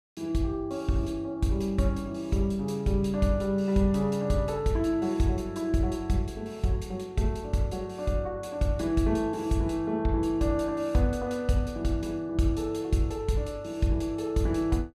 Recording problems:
none

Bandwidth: 14.5 kHz